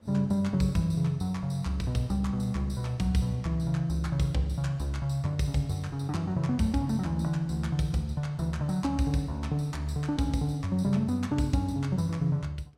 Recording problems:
wind noise; below 620 Hz, SNR 28 dB

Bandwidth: 16 kHz